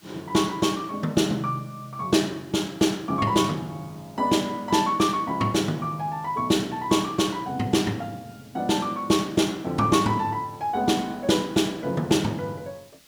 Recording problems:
hiss; SNR 28 dB

